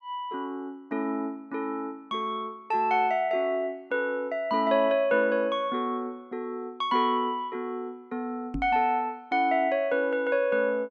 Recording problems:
microphone bump; at 8.5 s; peak -2 dB vs average level

